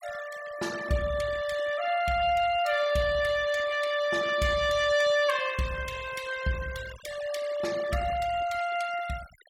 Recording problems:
noise reduction artefacts; signal-to-artefact ratio 16 dB

